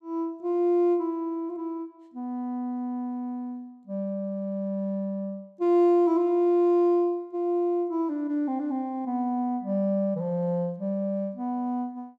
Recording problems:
none

